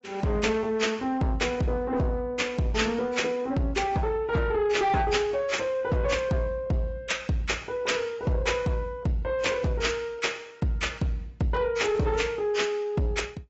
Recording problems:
lossy compression; AAC, log-spectral distance 3 dB, nothing above 7.6 kHz
distortion; soft clipping, signal-to-distortion ratio 11 dB

